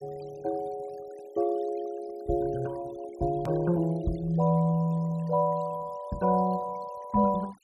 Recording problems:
denoising artefacts; signal-to-artefact ratio 22 dB
hard cut with a click; at 3.5 s

